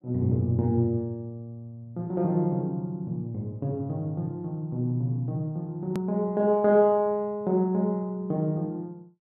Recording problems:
click at an edit; at 6 s

